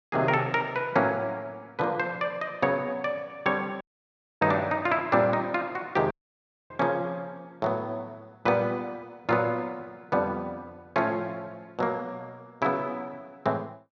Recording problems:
dropout; at 4 s for 0.5 s and at 6 s for 0.5 s

